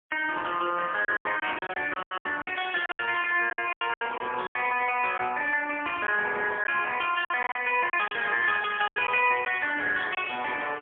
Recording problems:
telephone audio; 300 Hz to 3.4 kHz, AMR-NB, then MP3
lost packets; 11% of the sound replaced, filled with silence

